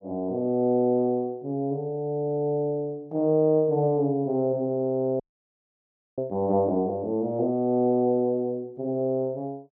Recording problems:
frozen audio; at 5 s for 1 s

